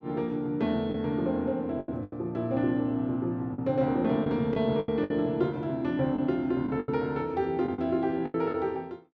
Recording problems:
lost packets; 8% of the sound replaced, filled with the last packet

